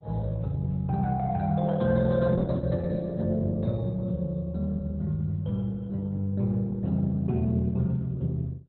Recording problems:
codec artefacts; Opus, log-spectral distance 2 dB, nothing above 4 kHz

